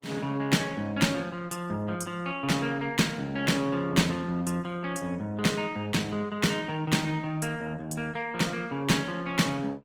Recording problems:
lossy compression; Opus, log-spectral distance 3 dB, nothing above 19 kHz

